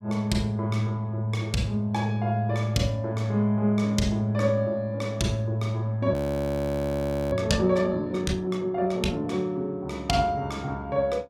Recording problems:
frozen audio; at 6 s for 1 s

